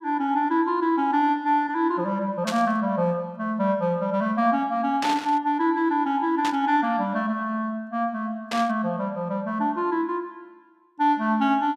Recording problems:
static burst; 4 times, first at 2.5 s; peak -2 dB vs average level

